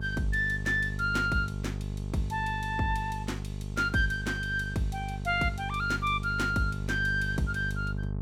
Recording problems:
electrical hum; 50 Hz, harmonics up to 450 Hz, SNR 6 dB

